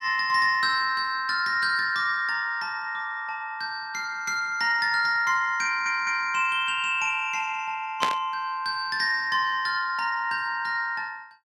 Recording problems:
audio stuttering; at 5.5 s
burst of static; at 8 s; peak +3 dB vs average level

